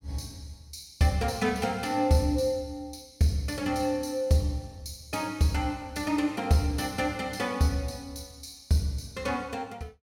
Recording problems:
none

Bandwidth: 16.5 kHz